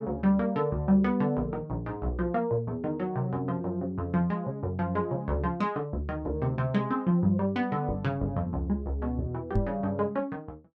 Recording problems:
microphone thump; at 9.5 s; peak +6 dB vs average level

